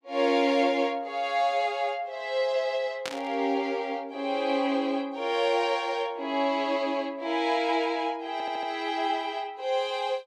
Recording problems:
burst of static; at 3 s; peak -2 dB vs average level
audio stuttering; at 8.5 s

